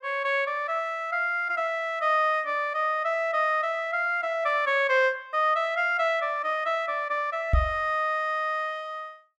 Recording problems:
microphone bump; at 7.5 s; peak +6 dB vs average level

